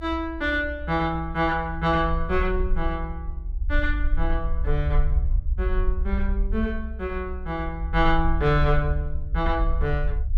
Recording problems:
rumble; below 62 Hz, SNR 2 dB

